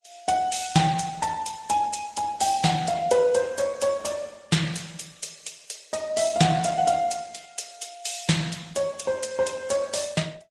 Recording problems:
lossy compression; Vorbis, then Opus, log-spectral distance 5 dB, nothing above 9.8 kHz

